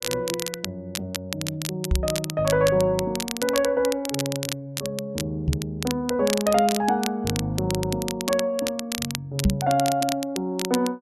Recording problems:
crackle; vinyl, SNR 7 dB
microphone thump; at 2 s, at 5.5 s and at 9.5 s; peak +8 dB vs average level

